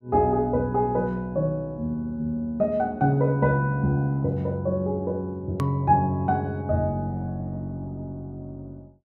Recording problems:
click at an edit; at 5.5 s

